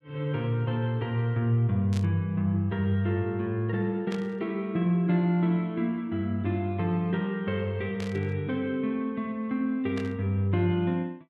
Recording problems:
burst of static; 4 times, first at 2 s; peak -9 dB vs average level

